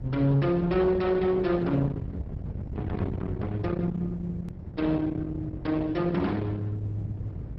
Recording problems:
codec artefacts; MP2, then Opus, log-spectral distance 2 dB
distortion; soft clipping, signal-to-distortion ratio 11 dB
rumble; below 200 Hz, SNR 7 dB
edit click; at 4.5 s

